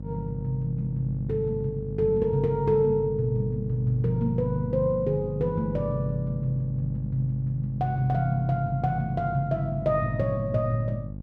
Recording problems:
electrical hum; 50 Hz, harmonics up to 550 Hz, SNR 9 dB

